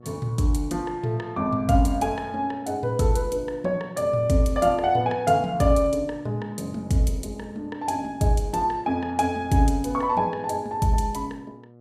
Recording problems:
electrical hum; 60 Hz, harmonics up to 840 Hz, SNR 25 dB

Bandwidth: 15 kHz